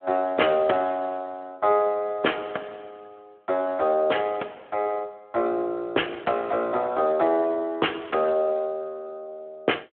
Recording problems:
telephone audio; 300 Hz to 3.2 kHz, Speex

